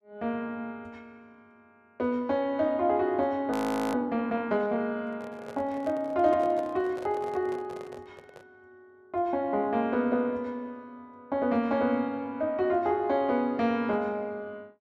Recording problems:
frozen audio; at 3.5 s
handling noise; from 5 to 8.5 s; peak -10 dB vs average level

